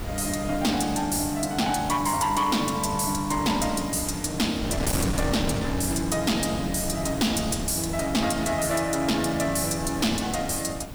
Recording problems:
distorted audio; hard clipping, signal-to-distortion ratio 11 dB
hiss; slope +3 dB per octave, SNR 23 dB
wind on the microphone; below 520 Hz, SNR 9 dB

